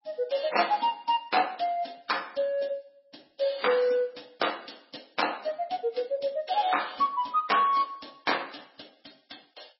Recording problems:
lossy compression; AAC, then MP3, log-spectral distance 7 dB, nothing above 5.5 kHz

